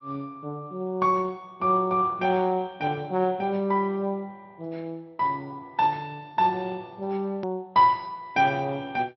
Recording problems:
treble cut off; nothing above 5 kHz
lossy compression; Speex, log-spectral distance 2 dB
edit click; at 7.5 s

